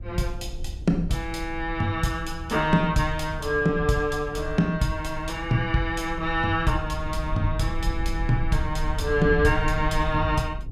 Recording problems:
low-frequency rumble; below 70 Hz, SNR 8 dB

